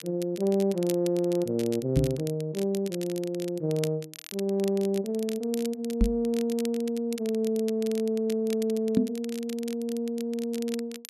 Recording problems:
crackle; vinyl, SNR 15 dB
knock on the microphone; at 2 s, at 6 s and at 9 s; peak +8 dB vs average level
audio stuttering; at 8 s

